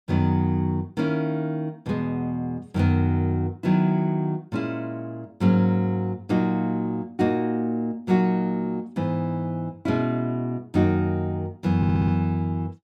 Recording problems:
stutter; at 12 s

